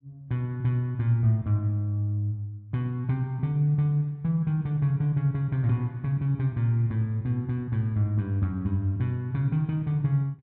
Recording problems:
none

